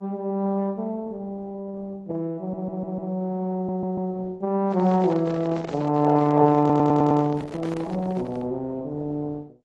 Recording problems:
codec artefacts; Opus, then AAC, log-spectral distance 2 dB
audio stuttering; at 2.5 s, at 3.5 s and at 6.5 s
handling noise; from 4.5 to 8.5 s; peak -7 dB vs average level

